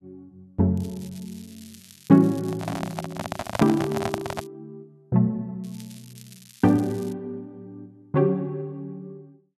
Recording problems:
crackling; from 1 to 4.5 s and from 5.5 to 7 s; loose cable, SNR 23 dB
microphone handling noise; from 2.5 to 4.5 s; peak +2 dB vs average level

